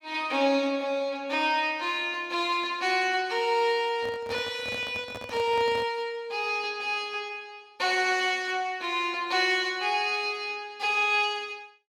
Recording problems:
handling noise; from 4 to 6 s; peak -9 dB vs average level

